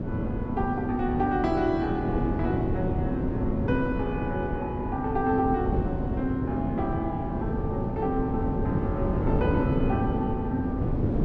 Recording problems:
wind noise; below 310 Hz, SNR 0 dB

